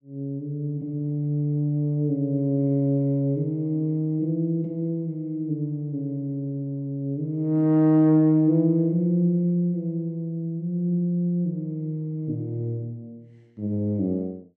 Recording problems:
none

